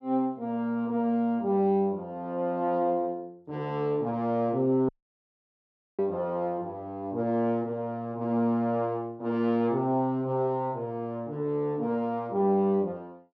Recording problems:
audio cutting out; at 5 s for 1 s

